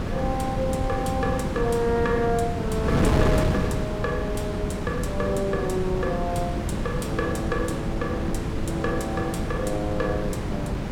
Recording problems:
wind noise; below 360 Hz, SNR -1 dB

